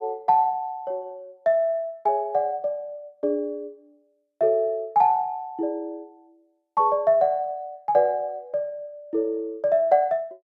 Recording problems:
none

